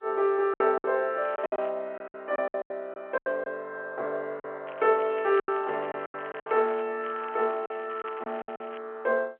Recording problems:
phone line; 280 Hz to 3.6 kHz, G.711
lost packets; 11% of the sound replaced, filled with silence
crackle; at 1 s, from 4.5 to 7 s and from 7 to 9 s; loose cable, SNR 21 dB

